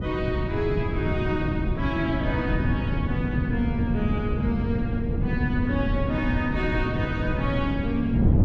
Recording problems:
wind on the microphone; below 190 Hz, SNR -1 dB

